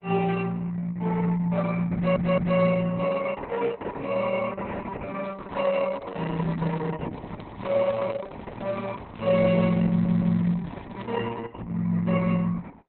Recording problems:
codec artefacts; Opus, log-spectral distance 5 dB, nothing above 4.1 kHz
stutter; at 2 s and at 10 s
crackle; from 5 to 7 s and from 7 to 11 s; loose cable, SNR 25 dB

